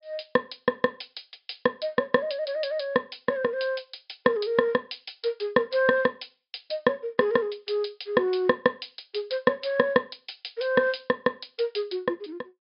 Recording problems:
treble missing; nothing above 5.5 kHz

